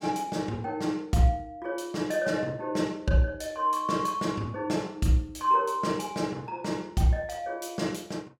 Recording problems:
none

